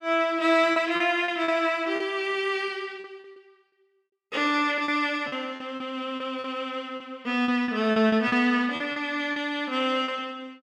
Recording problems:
lost packets; 10% of the sound replaced, filled with repeated pitch periods

